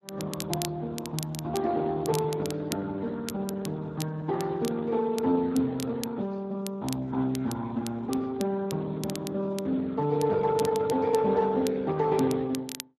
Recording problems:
lossy codec; Speex, log-spectral distance 3 dB
crackling; vinyl, SNR 14 dB

